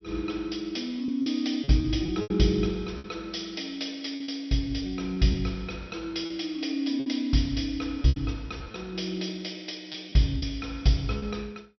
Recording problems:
treble missing; nothing above 5.7 kHz
packet loss; 7% of the sound replaced, filled with repeated pitch periods

